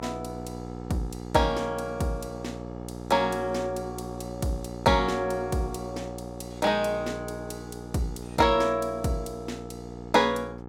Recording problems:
hum; 60 Hz, harmonics up to 1.4 kHz, SNR 11 dB

